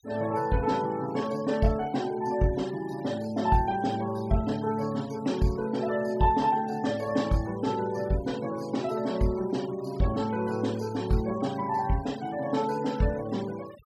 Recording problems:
denoising artefacts; signal-to-artefact ratio 20 dB

